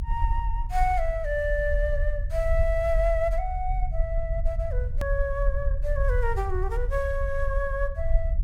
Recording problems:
rumble; below 54 Hz, SNR 0 dB
click at an edit; at 5 s

